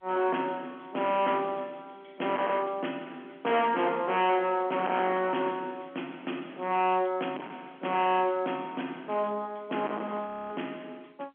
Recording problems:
phone line; 220 Hz to 3.3 kHz, G.711
distorted audio; hard clipping, signal-to-distortion ratio 7 dB
audio freezing; at 10 s

